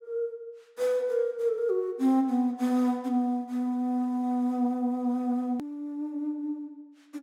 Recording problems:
edit click; at 5.5 s

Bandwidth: 16 kHz